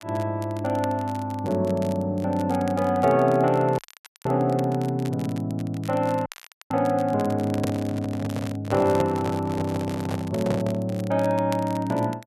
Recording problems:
crackling; vinyl, SNR 21 dB
dropout; at 4 s and at 6.5 s
microphone handling noise; from 7.5 to 11 s; peak -1 dB vs average level

